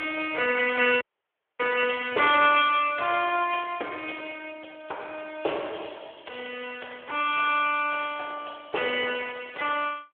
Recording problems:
phone line; 370 Hz to 3.4 kHz, Speex
audio cutting out; at 1 s for 0.5 s

